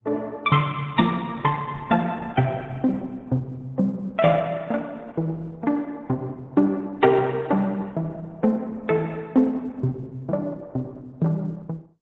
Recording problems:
codec artefacts; AAC, then Opus, log-spectral distance 2 dB, nothing above 3.7 kHz

